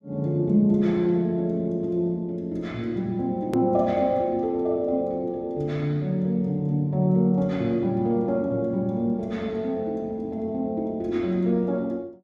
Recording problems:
click at an edit; at 3.5 s

